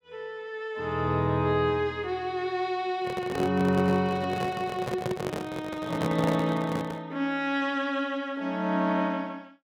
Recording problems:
handling noise; from 3 to 7 s; peak +1 dB vs average level

